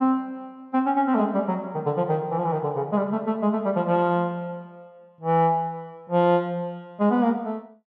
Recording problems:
none

